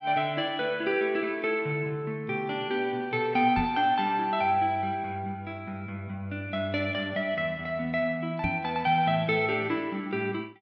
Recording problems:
knock on the microphone; at 3.5 s and at 8.5 s; peak 0 dB vs average level

